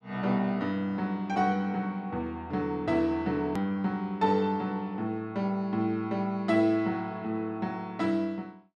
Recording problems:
click at an edit; at 3.5 s

